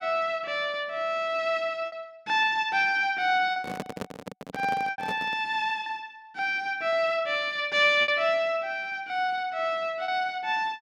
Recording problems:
packet loss; 4% of the sound replaced, filled with repeated pitch periods
microphone handling noise; from 3.5 to 5.5 s; peak -4 dB vs average level

